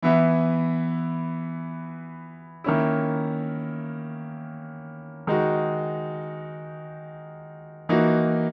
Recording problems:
none

